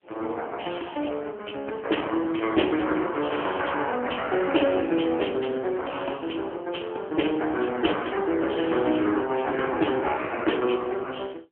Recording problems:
telephone audio; 260 Hz to 3.4 kHz, AMR-NB

